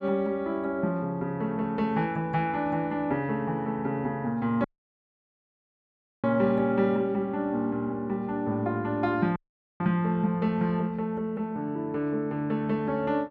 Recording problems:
audio cutting out; at 4.5 s for 1.5 s and at 9.5 s

